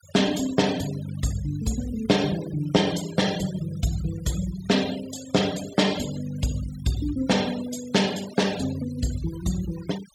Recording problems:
denoising artefacts; signal-to-artefact ratio 14 dB

